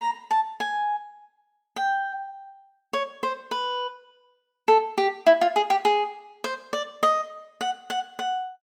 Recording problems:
none

